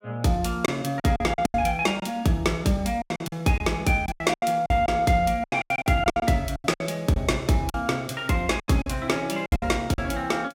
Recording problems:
lost packets; 14% of the sound replaced, filled with silence

